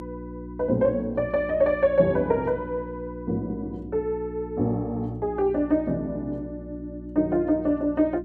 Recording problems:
hum; 60 Hz, harmonics up to 360 Hz, SNR 12 dB

